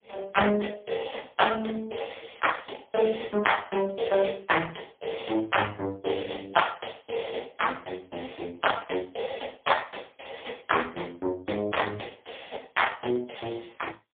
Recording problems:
phone line; 170 Hz to 3.4 kHz, AMR-NB, then MP3

